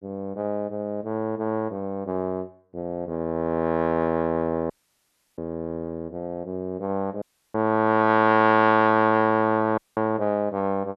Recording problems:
audio cutting out; at 4.5 s for 0.5 s, at 7 s and at 10 s

